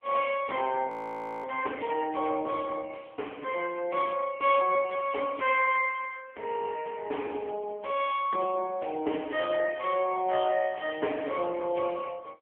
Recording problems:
telephone audio; 370 Hz to 3.1 kHz, AMR-NB
frozen audio; at 1 s for 0.5 s

